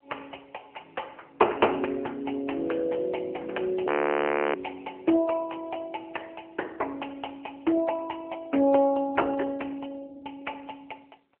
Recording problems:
telephone audio; 300 Hz to 3 kHz, AMR-NB
frozen audio; at 4 s for 0.5 s

